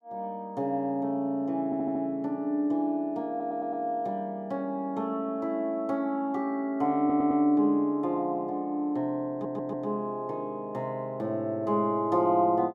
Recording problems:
stutter; 4 times, first at 1.5 s

